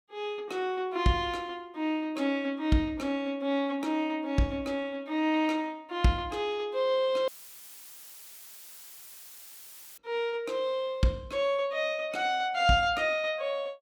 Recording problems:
dropout; at 7.5 s for 2.5 s; filled with static

